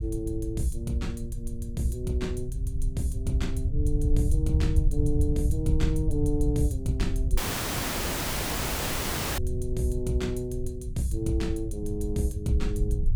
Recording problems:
rumble; below 88 Hz, SNR 0 dB
audio cutting out; at 7.5 s for 2 s

